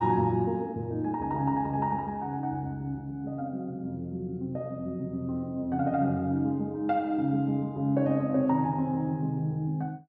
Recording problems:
none

